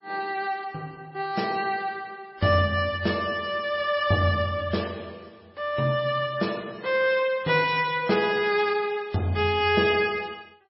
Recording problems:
lossy compression; MP3, log-spectral distance 3 dB, nothing above 5.3 kHz

